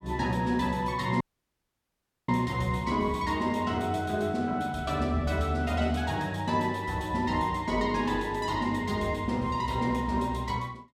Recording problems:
dropout; at 1 s for 1 s

